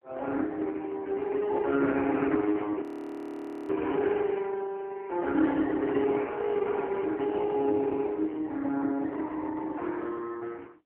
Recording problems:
telephone audio; 240 Hz to 3.3 kHz, AMR-NB
frozen audio; at 3 s for 1 s

